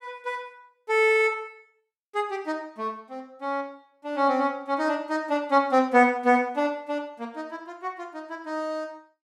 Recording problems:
none

